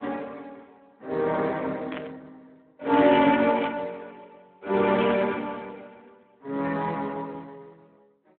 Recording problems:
telephone audio; 260 Hz to 3.5 kHz, Speex
static burst; at 2 s, at 3.5 s and at 5 s; peak -8 dB vs average level

